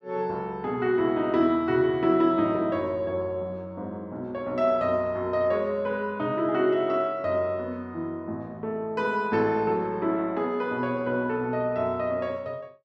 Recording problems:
none

